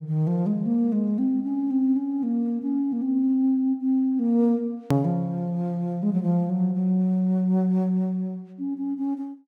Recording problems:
hard cut with a click; at 5 s

